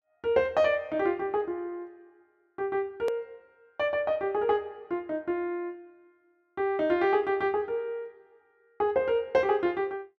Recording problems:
edit click; at 3 s

